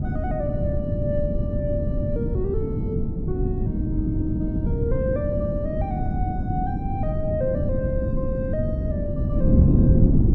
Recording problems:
wind noise; below 210 Hz, SNR -6 dB

